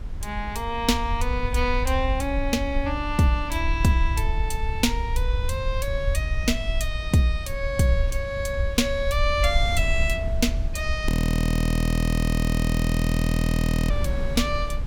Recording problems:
low-frequency rumble; below 68 Hz, SNR 4 dB
wind on the microphone; below 82 Hz, SNR 9 dB
frozen audio; at 11 s for 3 s

